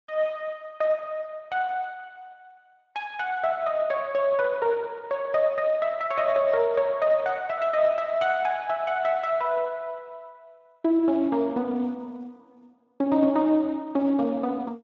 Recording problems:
codec artefacts; Speex, log-spectral distance 2 dB

